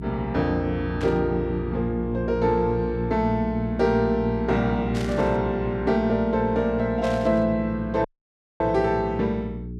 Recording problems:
hum; 60 Hz, harmonics up to 420 Hz, SNR 9 dB
static burst; at 1 s, at 5 s and at 7 s; peak -10 dB vs average level
audio cutting out; at 8 s for 0.5 s

